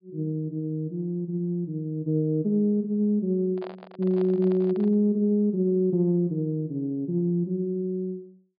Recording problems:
treble missing; nothing above 4.9 kHz
handling noise; from 3.5 to 5 s; peak -11 dB vs average level

